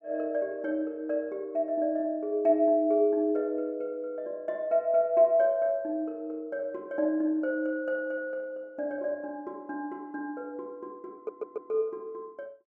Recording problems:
stutter; at 11 s

